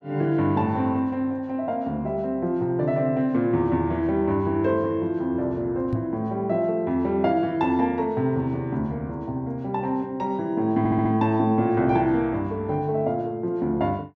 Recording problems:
microphone thump; at 6 s; peak +1 dB vs average level
stutter; at 11 s

